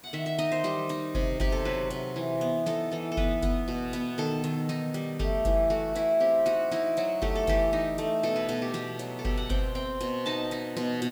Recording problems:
hiss; slope -4 dB per octave, SNR 23 dB

